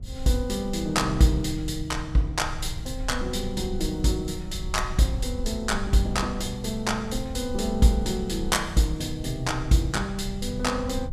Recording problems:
rumble; below 76 Hz, SNR 10 dB

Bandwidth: 14 kHz